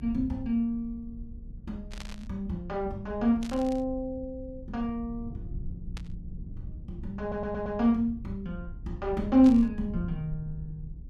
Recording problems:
low-frequency rumble; below 98 Hz, SNR 14 dB
burst of static; 4 times, first at 2 s; peak -10 dB vs average level
audio stuttering; at 7 s

